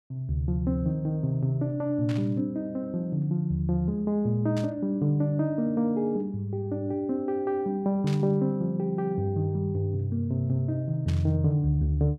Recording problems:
burst of static; 4 times, first at 2 s; peak -9 dB vs average level

